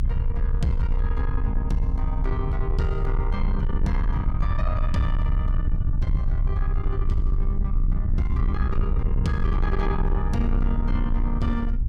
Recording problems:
distorted audio; soft clipping, signal-to-distortion ratio 10 dB
low-frequency rumble; below 70 Hz, strongest tone 30 Hz, SNR -4 dB
wind on the microphone; below 82 Hz, SNR 10 dB

